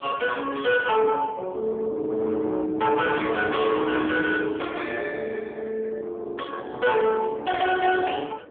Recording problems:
phone line; 280 Hz to 3 kHz, AMR-NB
distorted audio; hard clipping, signal-to-distortion ratio 12 dB
wind noise; below 790 Hz, SNR 22 dB

